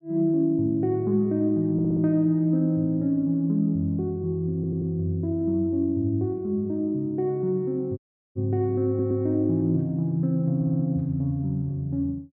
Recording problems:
treble missing; nothing above 8 kHz
stutter; 4 times, first at 1.5 s
dropout; at 8 s

